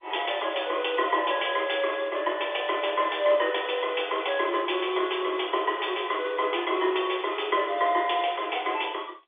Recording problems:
phone line; 280 Hz to 3.5 kHz, G.711

